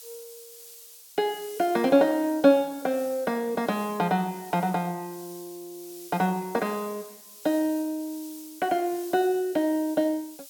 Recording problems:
background hiss; SNR 18 dB

